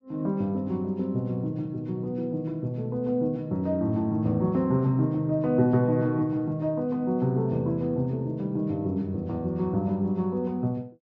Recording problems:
treble missing; nothing above 8 kHz

